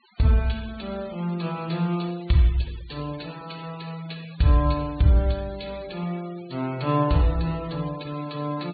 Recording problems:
treble cut off; nothing above 4.5 kHz
denoising artefacts; signal-to-artefact ratio 21 dB

